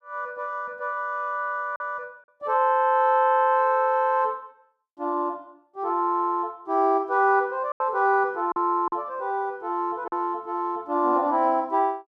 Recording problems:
lost packets; 2% of the sound replaced, filled with silence

